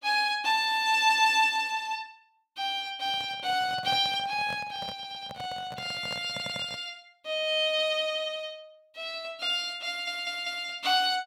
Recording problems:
handling noise; from 3 to 7 s; peak -8 dB vs average level
stutter; at 5 s, at 6.5 s and at 10 s

